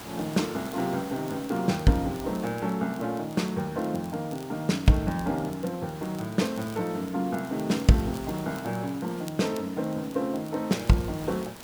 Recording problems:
background hiss; slope -4 dB per octave, SNR 16 dB
crackling; vinyl, SNR 23 dB

